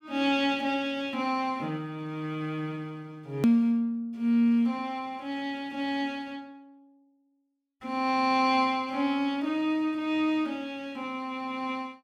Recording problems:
hard cut with a click; at 3.5 s

